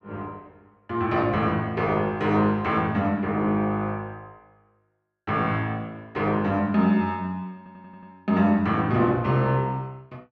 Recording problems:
stutter; at 7.5 s

